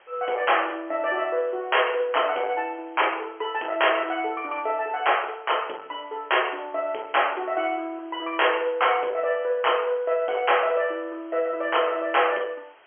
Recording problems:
telephone audio; 320 Hz to 3.3 kHz, G.711
distortion; soft clipping, signal-to-distortion ratio 12 dB
background hiss; SNR 29 dB

